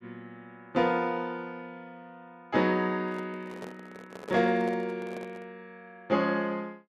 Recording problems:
handling noise; from 3 to 5.5 s; peak -7 dB vs average level

